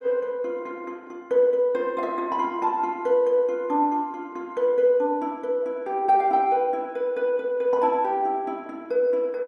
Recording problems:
none

